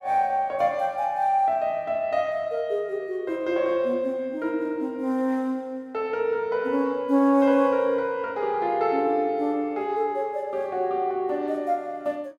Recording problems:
none

